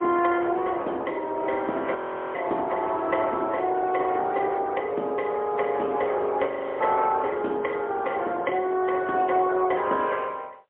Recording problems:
telephone audio; 280 Hz to 3.3 kHz, AMR-NB, then MP3
audio freezing; at 2 s and at 6.5 s

